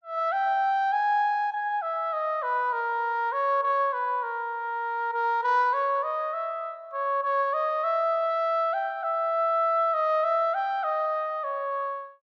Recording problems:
none

